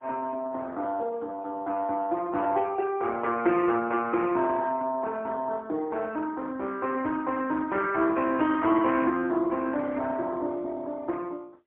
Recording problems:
phone line; 280 Hz to 3.2 kHz, AMR-NB, then MP3

